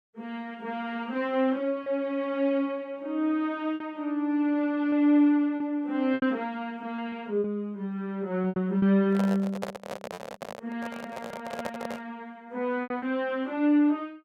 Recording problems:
packet loss; 5% of the sound replaced, filled with repeated pitch periods
microphone handling noise; from 9 to 12 s; peak -2 dB vs average level

